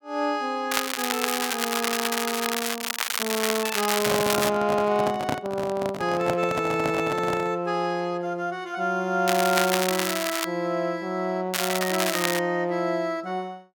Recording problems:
crackle; from 0.5 to 4.5 s, from 9.5 to 10 s and at 12 s; loose cable, SNR 1 dB
handling noise; from 4 to 7.5 s; peak +3 dB vs average level

